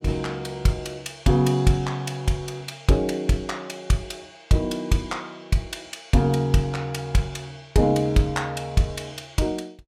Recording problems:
none

